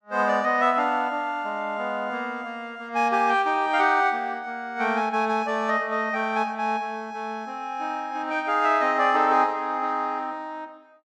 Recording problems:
none

